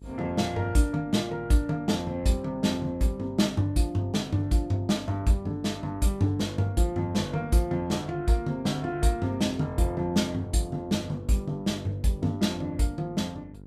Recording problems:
lossy codec; Vorbis, log-spectral distance 2 dB, nothing above 13.1 kHz
hum; 50 Hz, harmonics up to 600 Hz, SNR 19 dB

